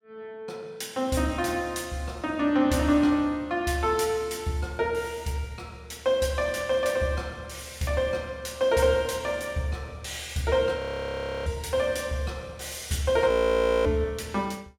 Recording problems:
audio freezing; at 11 s for 0.5 s and at 13 s for 0.5 s

